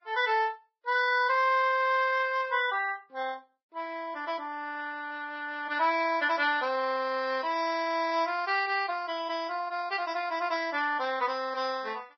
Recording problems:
codec artefacts; Vorbis, log-spectral distance 3 dB, nothing above 5.3 kHz

